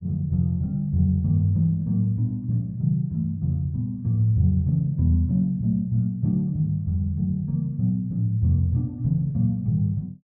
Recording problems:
none

